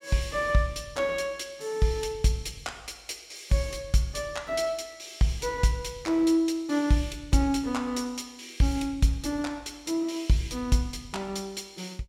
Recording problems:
none

